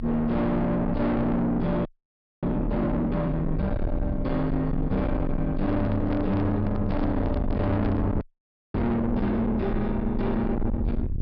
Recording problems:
low-pass filter; nothing above 5.5 kHz
distortion; soft clipping, signal-to-distortion ratio 6 dB
rumble; below 230 Hz, strongest tone 24 Hz, SNR 5 dB
frozen audio; at 2 s for 0.5 s and at 8 s for 0.5 s
microphone handling noise; from 5.5 to 8 s; peak -5 dB vs average level

